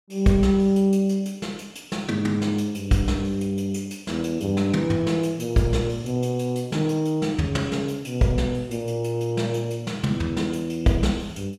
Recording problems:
none

